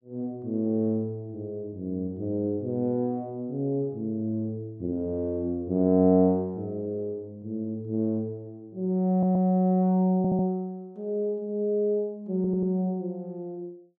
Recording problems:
audio stuttering; at 9 s, at 10 s and at 12 s

